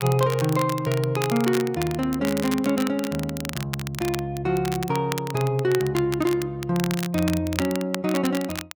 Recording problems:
crackling; vinyl, SNR 10 dB

